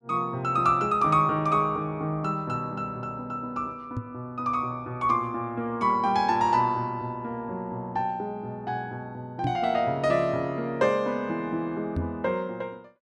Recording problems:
knock on the microphone; at 4 s, at 9.5 s and at 12 s; peak +1 dB vs average level

